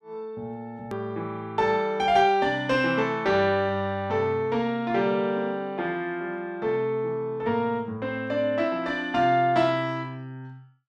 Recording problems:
click at an edit; at 1 s

